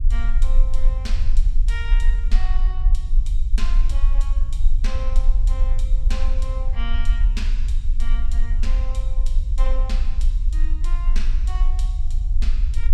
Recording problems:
low-frequency rumble; below 40 Hz, strongest tone 18 Hz, SNR -15 dB

